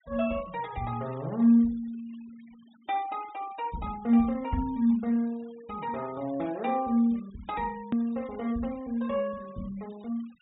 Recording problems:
treble missing; nothing above 4 kHz
noise reduction artefacts; signal-to-artefact ratio 25 dB
click at an edit; at 8 s

